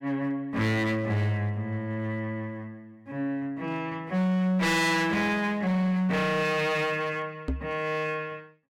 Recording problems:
distorted audio; hard clipping, signal-to-distortion ratio 7 dB
knock on the microphone; at 7.5 s; peak +1 dB vs average level

